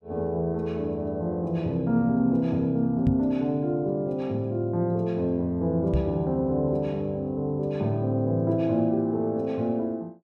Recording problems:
knock on the microphone; at 3 s and at 6 s; peak +4 dB vs average level

